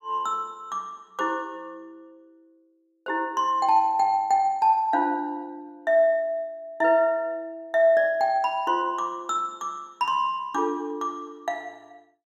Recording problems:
none

